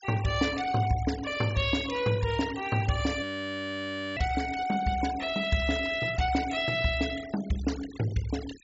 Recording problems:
low-pass filter; nothing above 8 kHz
noise reduction artefacts; signal-to-artefact ratio 15 dB
audio freezing; at 3 s for 1 s

